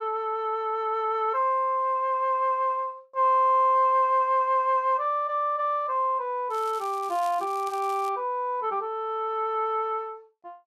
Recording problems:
crackling; from 6.5 to 8 s; loose cable, SNR 22 dB

